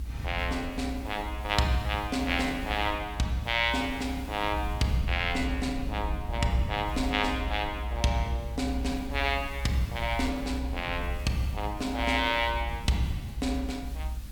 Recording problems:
background hiss; slope -1 dB per octave, SNR 22 dB
low-frequency rumble; below 66 Hz, strongest tone 62 Hz, SNR 7 dB

